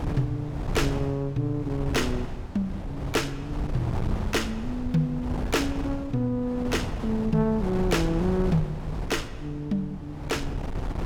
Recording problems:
wind noise; below 220 Hz, SNR 5 dB

